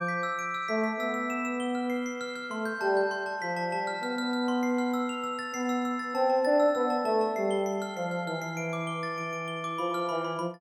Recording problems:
none

